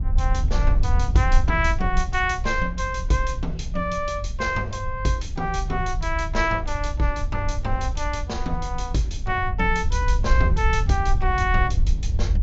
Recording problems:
low-pass filter; nothing above 7.4 kHz
wind noise; below 72 Hz, SNR 1 dB

